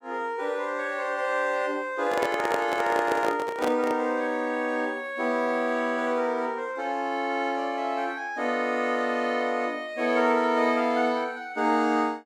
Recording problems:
handling noise; from 2 to 4 s; peak +2 dB vs average level

